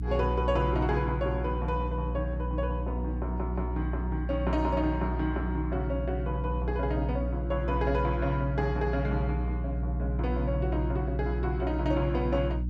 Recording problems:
electrical hum; 60 Hz, harmonics up to 300 Hz, SNR 1 dB

